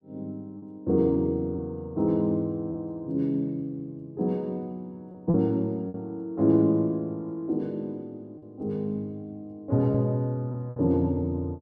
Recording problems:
lost packets; 3% of the sound replaced, filled with repeated pitch periods

